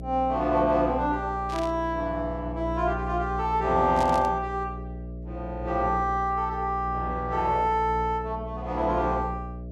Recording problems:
electrical hum; 60 Hz, harmonics up to 660 Hz, SNR 10 dB
burst of static; at 1.5 s and at 4 s; peak -9 dB vs average level

